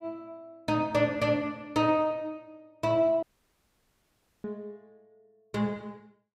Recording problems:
audio cutting out; at 3 s for 1 s

